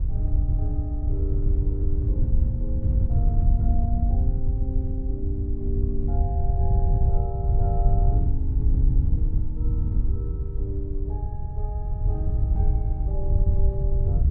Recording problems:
wind on the microphone; below 84 Hz, SNR -12 dB

